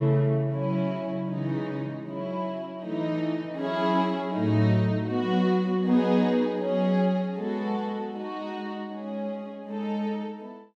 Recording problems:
none

